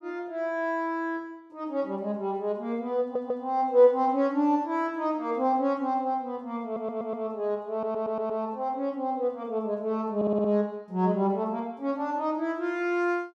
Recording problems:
stutter; 4 times, first at 3 s

